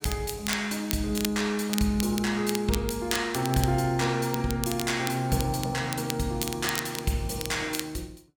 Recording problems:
crackling; vinyl, SNR 8 dB

